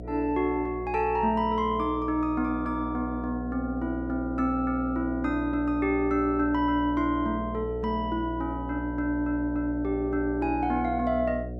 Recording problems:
hum; 60 Hz, harmonics up to 720 Hz, SNR 9 dB

